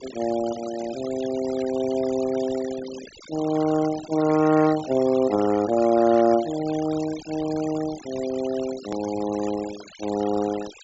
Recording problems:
treble cut off; nothing above 8 kHz
noise reduction artefacts; signal-to-artefact ratio 16 dB
edit click; at 9 s

